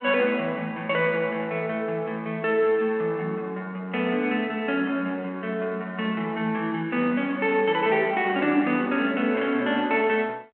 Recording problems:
telephone audio; 220 Hz to 3.2 kHz, G.726

